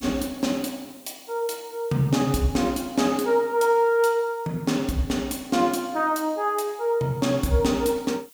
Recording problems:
hiss; slope +1 dB per octave, SNR 25 dB

